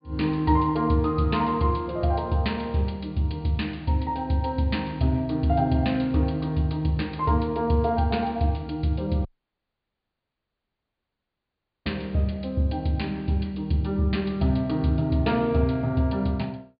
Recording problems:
low-pass filter; nothing above 4.8 kHz
dropout; at 9.5 s for 2.5 s

